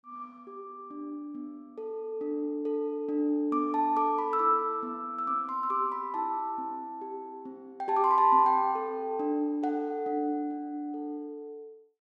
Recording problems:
none

